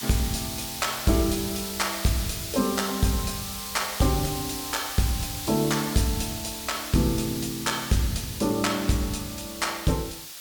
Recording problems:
distortion; hard clipping, signal-to-distortion ratio 10 dB
hiss; slope +3 dB per octave, SNR 6 dB

